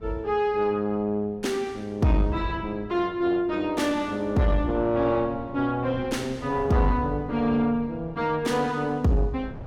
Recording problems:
distorted audio; soft clipping, signal-to-distortion ratio 11 dB
wind on the microphone; below 350 Hz, SNR 18 dB

